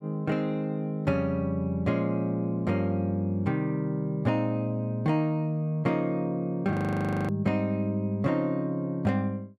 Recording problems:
frozen audio; at 6.5 s for 0.5 s

